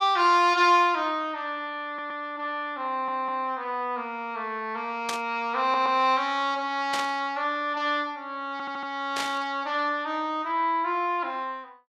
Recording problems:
audio stuttering; 4 times, first at 2 s
static burst; at 5 s, at 7 s and at 9 s; peak -1 dB vs average level

